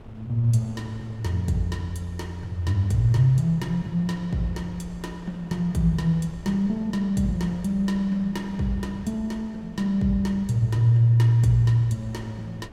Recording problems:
wind on the microphone; below 370 Hz, SNR 22 dB

